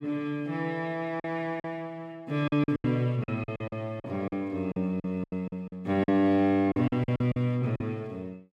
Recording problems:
lost packets; 12% of the sound replaced, filled with silence

